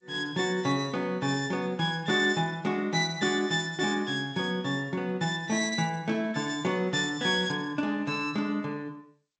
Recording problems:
lossy codec; G.722, log-spectral distance 2 dB

